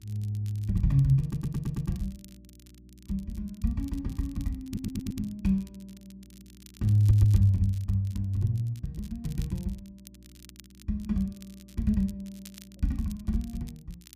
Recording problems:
hum; 60 Hz, harmonics up to 360 Hz, SNR 26 dB
crackle; vinyl, SNR 25 dB
stutter; at 1 s, at 4.5 s and at 7 s

